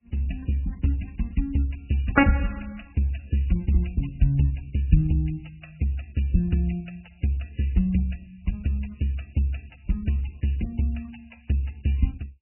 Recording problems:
codec artefacts; MP3, log-spectral distance 6 dB, nothing above 2.5 kHz

